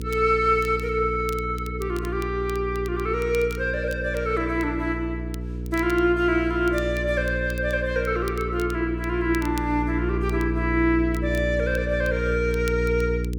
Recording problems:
hum; 60 Hz, harmonics up to 480 Hz, SNR 6 dB
crackle; vinyl, SNR 22 dB

